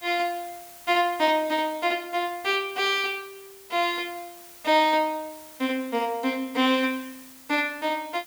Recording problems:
hiss; slope 0 dB per octave, SNR 20 dB

